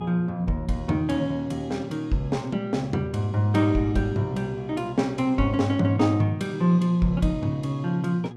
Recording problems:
hum; 60 Hz, harmonics up to 840 Hz, SNR 15 dB

